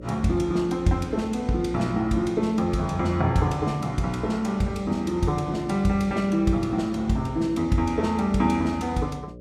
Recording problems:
hum; 60 Hz, harmonics up to 600 Hz, SNR 17 dB

